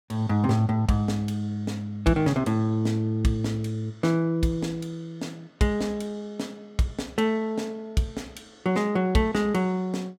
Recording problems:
none

